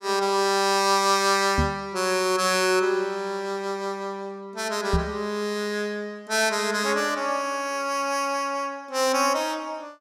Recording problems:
knock on the microphone; at 1.5 s and at 5 s; peak +3 dB vs average level

